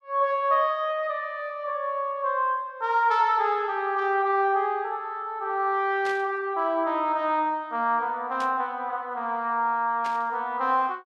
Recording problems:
burst of static; at 6 s, at 8.5 s and at 10 s; peak -10 dB vs average level

